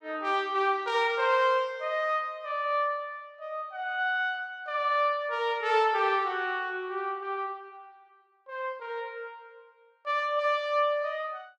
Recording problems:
none

